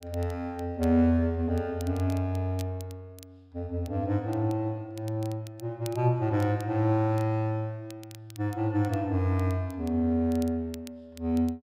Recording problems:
crackle; vinyl, SNR 24 dB

